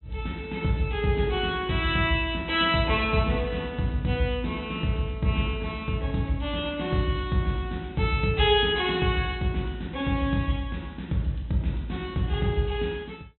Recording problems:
treble missing; nothing above 4 kHz

